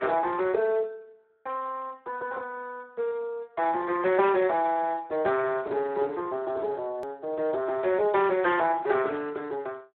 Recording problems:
phone line; 320 Hz to 2.8 kHz, Speex
hard cut with a click; at 7 s

